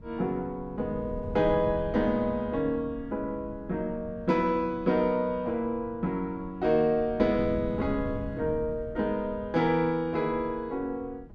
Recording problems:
wind on the microphone; below 180 Hz, SNR 14 dB

